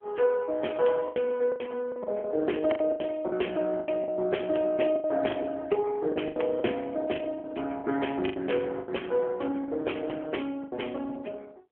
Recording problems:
phone line; 240 Hz to 3.3 kHz, AMR-NB
lost packets; 11% of the sound replaced, filled with the last packet

